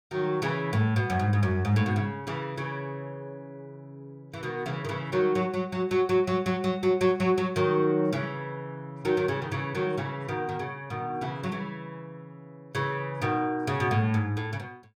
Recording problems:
none

